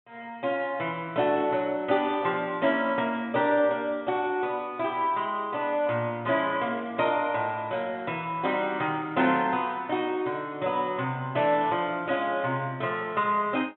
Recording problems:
low-pass filter; nothing above 3.7 kHz

